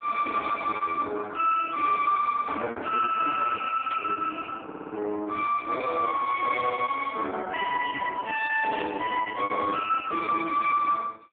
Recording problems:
phone line; 300 Hz to 2.6 kHz, AMR-NB
distortion; soft clipping, signal-to-distortion ratio 11 dB
lost packets; 16% of the sound replaced, filled with repeated pitch periods
burst of static; at 4 s and at 8.5 s; peak -7 dB vs average level
stutter; at 4.5 s

